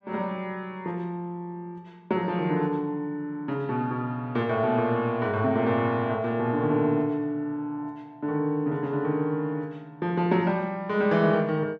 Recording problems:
none

